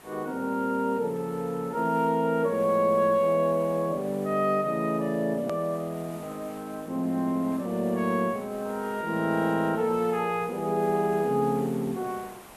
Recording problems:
background hiss; SNR 21 dB
hard cut with a click; at 5.5 s

